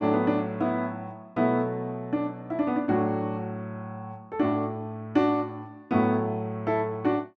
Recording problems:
none

